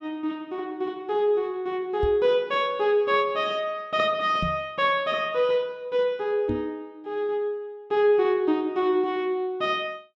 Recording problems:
microphone bump; at 2 s, at 4.5 s and at 6.5 s; peak -1 dB vs average level

